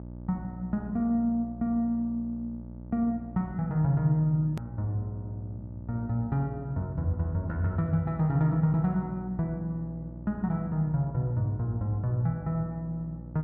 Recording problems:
electrical hum; 60 Hz, harmonics up to 900 Hz, SNR 13 dB
click at an edit; at 4.5 s

